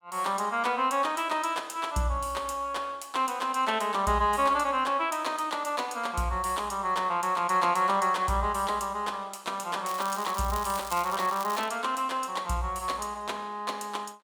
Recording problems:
crackling; from 10 to 12 s; loose cable, SNR 13 dB

